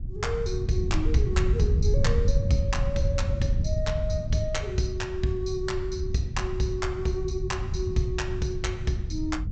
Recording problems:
treble cut off; nothing above 8 kHz
wind on the microphone; below 100 Hz, SNR 0 dB

